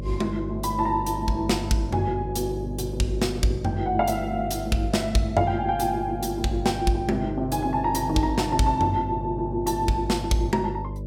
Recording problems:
mains hum; 50 Hz, harmonics up to 600 Hz, SNR 9 dB

